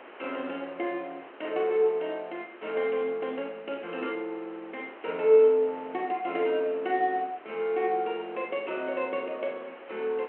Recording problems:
telephone audio; 280 Hz to 3.1 kHz, G.726
background hiss; SNR 19 dB

